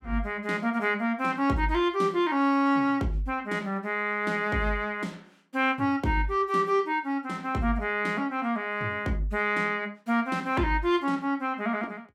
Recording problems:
none

